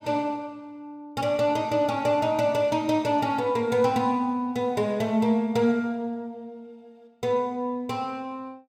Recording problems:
none

